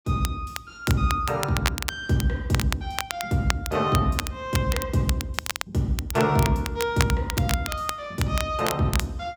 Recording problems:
crackling; vinyl, SNR 7 dB

